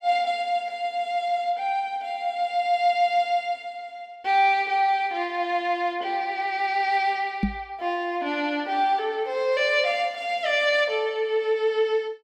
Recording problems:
microphone thump; at 7.5 s; peak +4 dB vs average level

